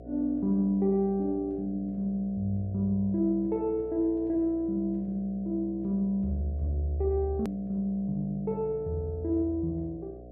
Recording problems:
mains hum; 60 Hz, harmonics up to 720 Hz, SNR 17 dB
hard cut with a click; at 7.5 s

